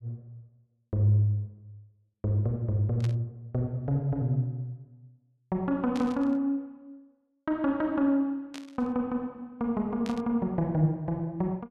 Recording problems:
burst of static; 4 times, first at 3 s; peak -9 dB vs average level

